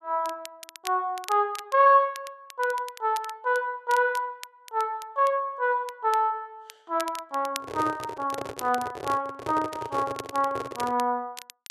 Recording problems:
crackling; vinyl, SNR 18 dB
microphone handling noise; from 7.5 to 11 s; peak -3 dB vs average level

